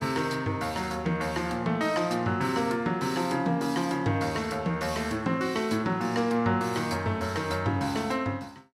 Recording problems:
none

